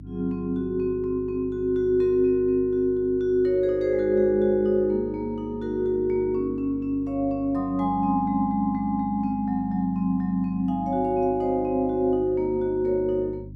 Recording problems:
hum; 50 Hz, harmonics up to 300 Hz, SNR 17 dB

